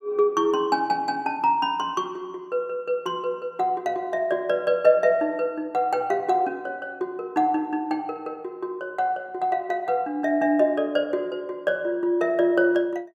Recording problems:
none

